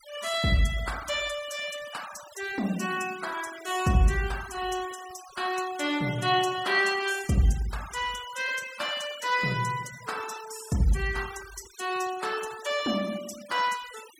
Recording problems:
noise reduction artefacts; signal-to-artefact ratio 16 dB

